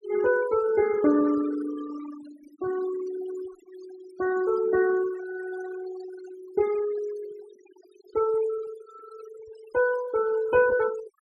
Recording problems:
denoising artefacts; signal-to-artefact ratio 16 dB

